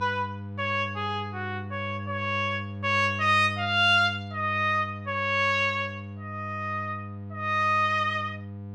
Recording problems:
hum; 50 Hz, harmonics up to 700 Hz, SNR 11 dB

